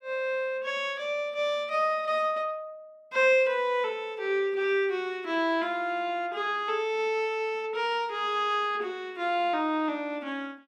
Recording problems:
none

